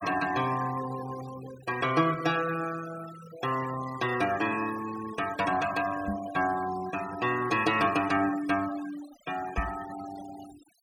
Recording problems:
denoising artefacts; signal-to-artefact ratio 14 dB
microphone thump; at 6 s and at 9.5 s; peak +1 dB vs average level

